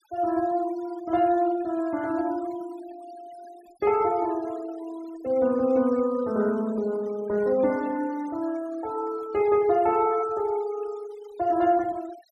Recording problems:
noise reduction artefacts; signal-to-artefact ratio 22 dB

